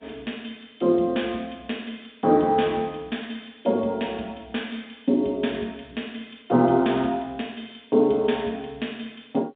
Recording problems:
phone line; 190 Hz to 3.7 kHz, G.711

